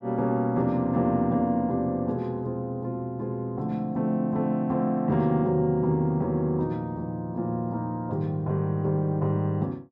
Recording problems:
none

